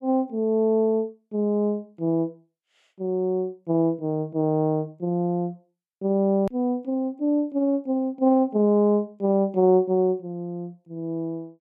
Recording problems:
click at an edit; at 6.5 s

